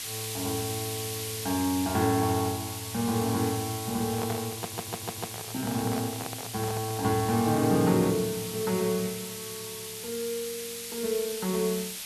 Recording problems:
hiss; SNR 6 dB
microphone handling noise; from 4 to 7 s; peak -1 dB vs average level
stutter; at 4.5 s

